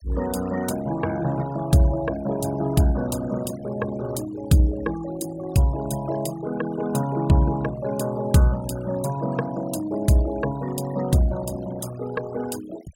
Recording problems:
noise reduction artefacts; signal-to-artefact ratio 18 dB

